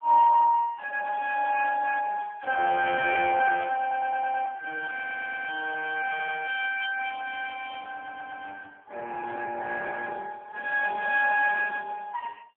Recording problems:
telephone audio; 280 Hz to 3.1 kHz, AMR-NB
audio stuttering; 4 times, first at 4 s

